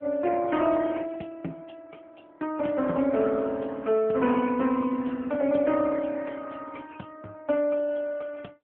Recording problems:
phone line; 170 Hz to 3.3 kHz, AMR-NB

